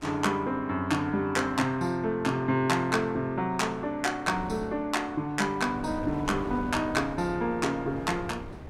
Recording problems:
wind on the microphone; below 470 Hz, SNR 15 dB

